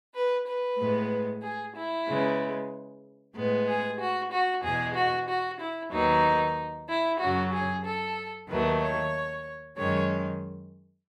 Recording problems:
none

